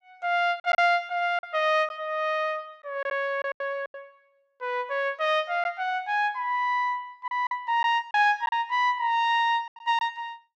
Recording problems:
lost packets; 6% of the sound replaced, filled with silence

